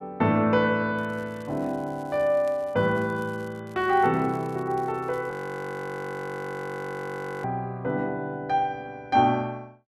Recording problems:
crackle; from 1 to 3.5 s and from 3.5 to 5.5 s; loose cable, SNR 29 dB
frozen audio; at 5.5 s for 2 s

